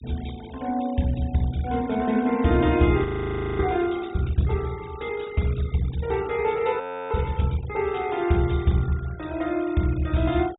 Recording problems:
treble cut off; nothing above 4 kHz
noise reduction artefacts; signal-to-artefact ratio 21 dB
audio freezing; at 3 s for 0.5 s and at 7 s

